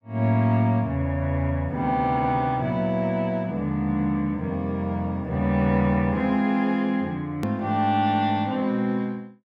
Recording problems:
hard cut with a click; at 7.5 s

